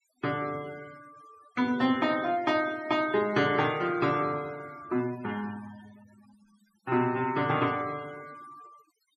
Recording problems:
noise reduction artefacts; signal-to-artefact ratio 20 dB

